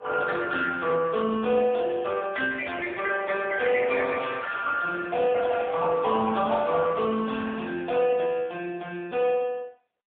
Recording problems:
phone line; 190 Hz to 3.4 kHz, AMR-NB, then MP3

